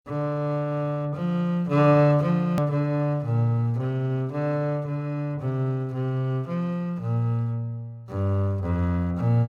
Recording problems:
click at an edit; at 2.5 s

